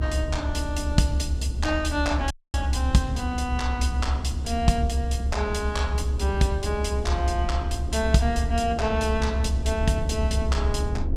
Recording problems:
rumble; below 74 Hz, strongest tone 64 Hz, SNR 0 dB
audio cutting out; at 2.5 s

